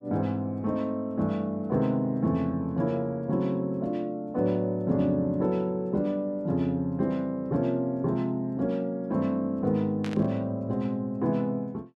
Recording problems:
burst of static; at 10 s; peak -8 dB vs average level

